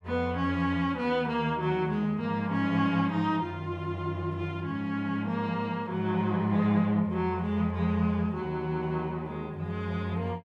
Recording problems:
none

